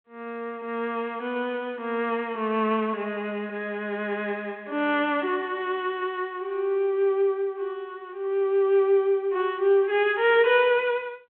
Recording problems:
phone line; 260 Hz to 3.4 kHz, G.726

